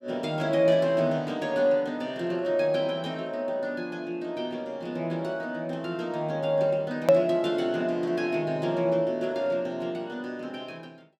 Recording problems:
hard cut with a click; at 7 s

